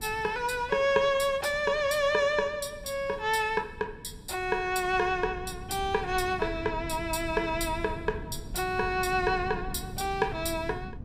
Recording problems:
wind noise; below 180 Hz, SNR 14 dB

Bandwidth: 15.5 kHz